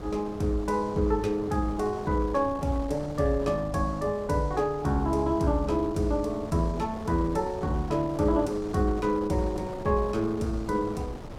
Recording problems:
wind noise; below 660 Hz, SNR 14 dB

